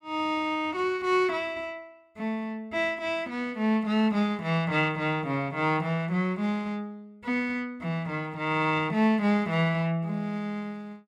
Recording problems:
none

